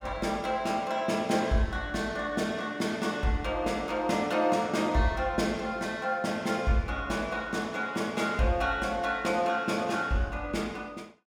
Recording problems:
none

